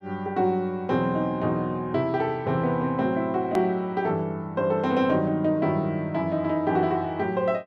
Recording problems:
click at an edit; at 3.5 s

